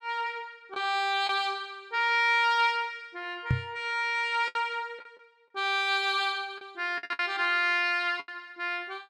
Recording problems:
lost packets; 5% of the sound replaced, filled with the last packet
microphone thump; at 3.5 s; peak +5 dB vs average level

